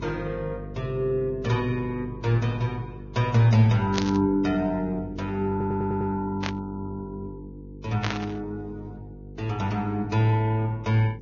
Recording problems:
treble cut off; nothing above 6.7 kHz
lossy compression; Vorbis, log-spectral distance 2 dB
hum; 50 Hz, harmonics up to 500 Hz, SNR 15 dB
burst of static; at 4 s, at 6.5 s and at 8 s; peak 0 dB vs average level
stutter; at 5.5 s

